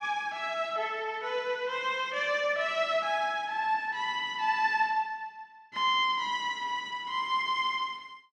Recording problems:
none

